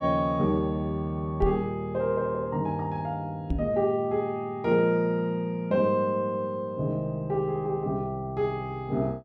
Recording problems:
microphone thump; at 1.5 s and at 3.5 s; peak +3 dB vs average level

